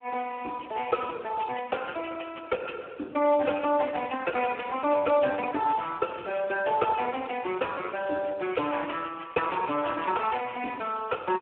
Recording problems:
telephone audio; 240 Hz to 2.5 kHz, Speex
crackling; from 5.5 to 11 s; loose cable, SNR 27 dB

